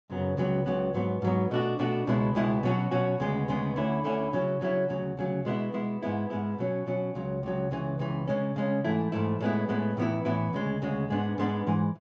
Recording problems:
treble missing; nothing above 8 kHz

